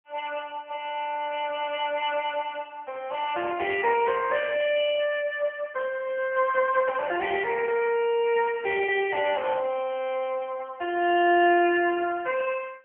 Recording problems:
telephone audio; 300 Hz to 3.1 kHz, AMR-NB

